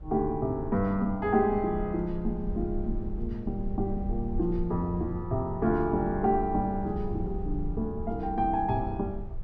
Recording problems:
rumble; below 66 Hz, SNR 10 dB

